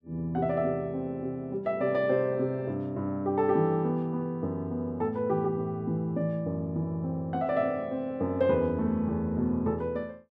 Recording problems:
none

